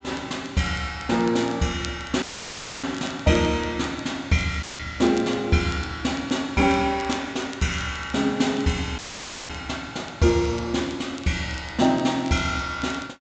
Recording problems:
treble missing; nothing above 8 kHz
crackle; vinyl, SNR 21 dB
dropout; at 2 s for 0.5 s, at 4.5 s and at 9 s for 0.5 s; filled with static

